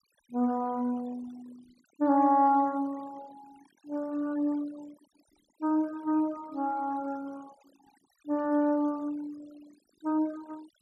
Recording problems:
noise reduction artefacts; signal-to-artefact ratio 24 dB

